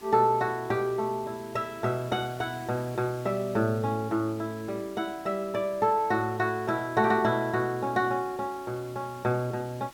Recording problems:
background hiss; slope -2 dB per octave, SNR 21 dB

